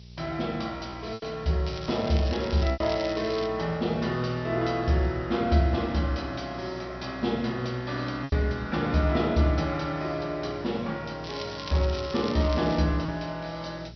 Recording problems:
low-pass filter; nothing above 5.8 kHz
electrical hum; 60 Hz, harmonics up to 600 Hz, SNR 19 dB
hiss; SNR 27 dB
lost packets; 2% of the sound replaced, filled with repeated pitch periods
crackle; from 1.5 to 3.5 s and from 11 to 13 s; loose cable, SNR 13 dB

